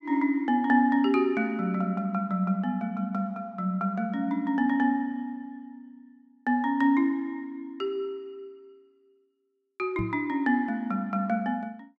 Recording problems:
microphone bump; at 10 s; peak -2 dB vs average level

